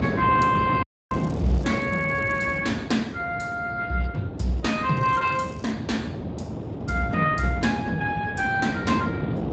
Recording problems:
lossy codec; Speex, log-spectral distance 4 dB, nothing above 7.8 kHz
wind on the microphone; below 420 Hz, SNR 6 dB
audio cutting out; at 1 s
crackle; from 1 to 2.5 s and at 5 s; loose cable, SNR 28 dB

